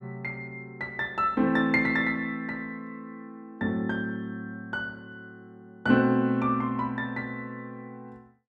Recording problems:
none

